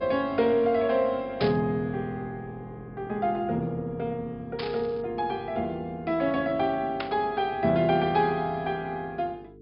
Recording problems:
treble cut off; nothing above 5.5 kHz
hum; 50 Hz, harmonics up to 450 Hz, SNR 21 dB
burst of static; at 1.5 s, at 4.5 s and at 7 s; peak -2 dB vs average level

